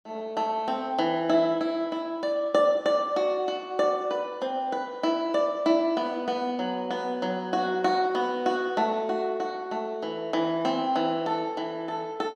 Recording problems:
none

